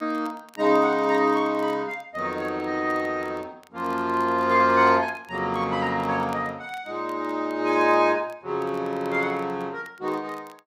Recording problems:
crackling; vinyl, SNR 30 dB

